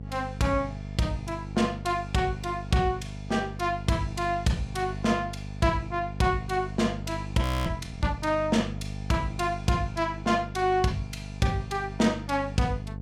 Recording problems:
hum; 50 Hz, harmonics up to 700 Hz, SNR 10 dB
audio freezing; at 7.5 s

